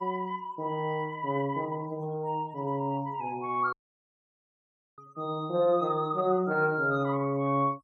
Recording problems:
noise reduction artefacts; signal-to-artefact ratio 28 dB
dropout; at 3.5 s for 1.5 s

